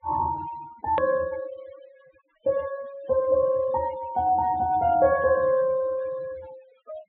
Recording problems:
low-pass filter; nothing above 4 kHz
denoising artefacts; signal-to-artefact ratio 20 dB
click at an edit; at 1 s

